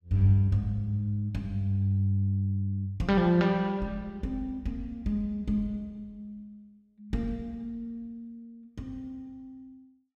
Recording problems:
none

